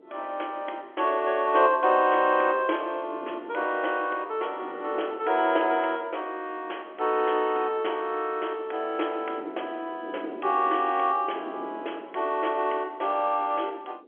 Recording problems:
phone line; 280 Hz to 3.4 kHz, G.711
wind noise; below 460 Hz, SNR 18 dB

